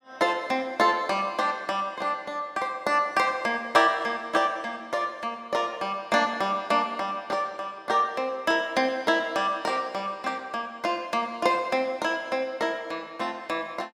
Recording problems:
none

